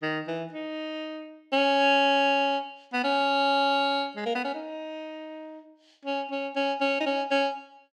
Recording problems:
none

